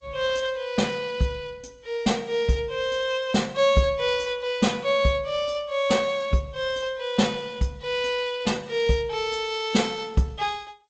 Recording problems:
codec artefacts; Opus, then G.722, log-spectral distance 3 dB, nothing above 7.6 kHz

